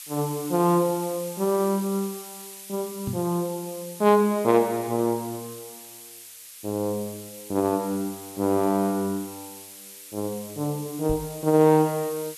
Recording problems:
background hiss; slope +6 dB per octave, SNR 15 dB
microphone bump; at 3 s and at 11 s; peak -3 dB vs average level

